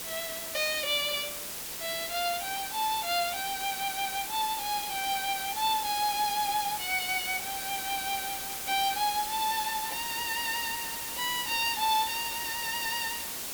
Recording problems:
hiss; slope -1 dB per octave, SNR 3 dB

